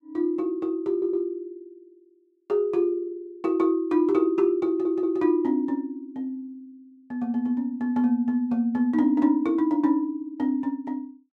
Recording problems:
audio stuttering; at 1 s and at 4.5 s

